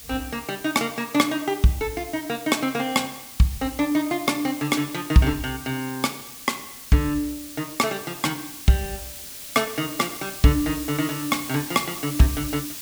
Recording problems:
hiss; SNR 11 dB

